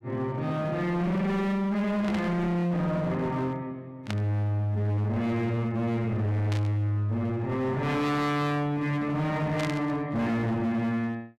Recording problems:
distorted audio; hard clipping, signal-to-distortion ratio 8 dB
static burst; 4 times, first at 2 s; peak -4 dB vs average level

